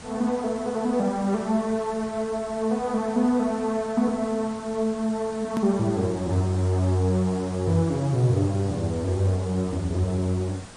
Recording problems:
lossy codec; MP3, log-spectral distance 4 dB, nothing above 13.1 kHz
hiss; slope -3 dB per octave, SNR 18 dB
click at an edit; at 5.5 s

